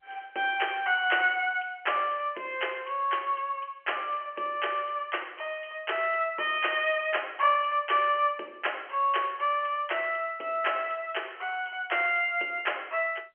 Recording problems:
telephone audio; 300 Hz to 3.1 kHz, G.711

